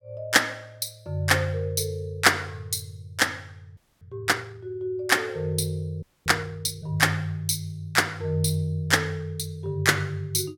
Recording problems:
frozen audio; at 4 s and at 6 s

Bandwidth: 17.5 kHz